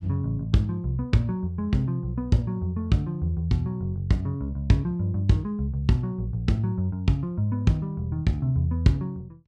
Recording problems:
none

